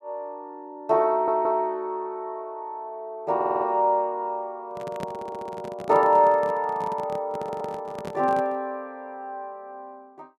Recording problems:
audio stuttering; 4 times, first at 1 s
microphone handling noise; from 4.5 to 8.5 s; peak -4 dB vs average level

